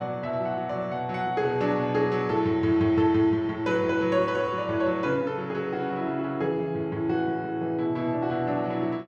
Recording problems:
none

